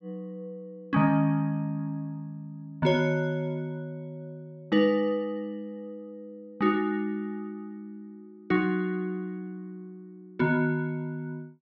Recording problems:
none

